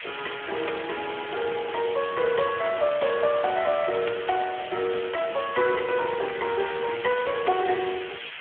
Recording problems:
telephone audio; 280 Hz to 3 kHz, Speex
background hiss; SNR 10 dB
crackling; from 6.5 to 7.5 s; loose cable, SNR 17 dB

